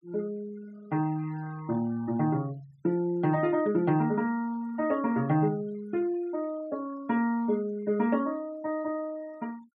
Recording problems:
noise reduction artefacts; signal-to-artefact ratio 25 dB

